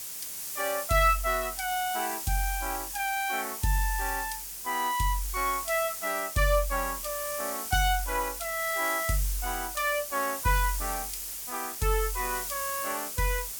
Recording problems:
background hiss; SNR 5 dB

